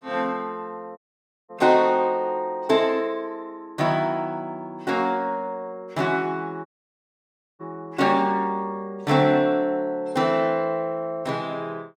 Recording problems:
audio cutting out; at 1 s for 0.5 s and at 6.5 s for 1 s

